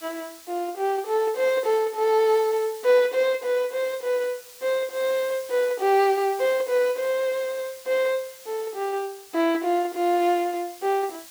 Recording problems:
background hiss; slope +2 dB per octave, SNR 19 dB

